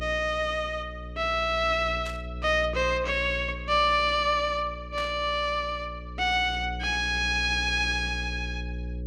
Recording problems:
hum; 60 Hz, harmonics up to 540 Hz, SNR 11 dB
burst of static; at 2 s and at 5 s; peak -11 dB vs average level

